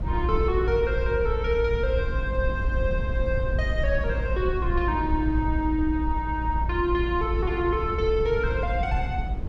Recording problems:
low-frequency rumble; below 74 Hz, strongest tone 54 Hz, SNR 2 dB

